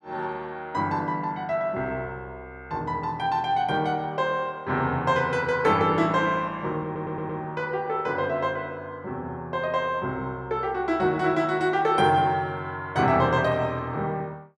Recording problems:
audio stuttering; at 7 s

